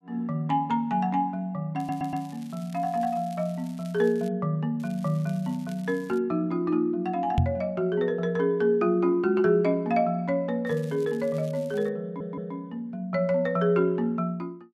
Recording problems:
stutter; at 2 s and at 12 s
crackling; from 2 to 4.5 s, from 5 to 6 s and from 11 to 12 s; loose cable, SNR 26 dB
microphone bump; at 7.5 s; peak +7 dB vs average level

